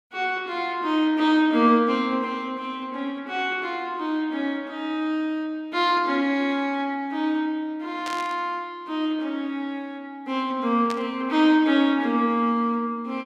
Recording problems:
burst of static; at 8 s and at 11 s; peak -7 dB vs average level

